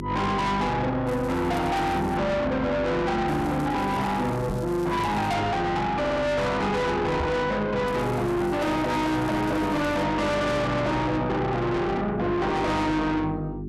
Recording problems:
distortion; soft clipping, signal-to-distortion ratio 6 dB
hum; 50 Hz, harmonics up to 400 Hz, SNR 12 dB
crackling; from 1 to 2 s, from 3.5 to 5.5 s and from 8 to 10 s; loose cable, SNR 23 dB
microphone bump; at 4.5 s and at 7 s; peak +2 dB vs average level
audio stuttering; at 6 s

